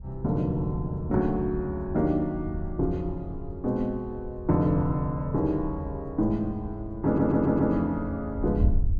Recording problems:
wind on the microphone; below 82 Hz, SNR 10 dB
stutter; at 7 s

